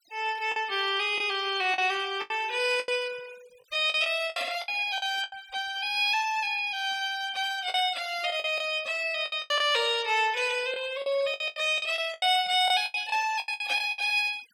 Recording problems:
noise reduction artefacts; signal-to-artefact ratio 20 dB
lost packets; 11% of the sound replaced, filled with the last packet

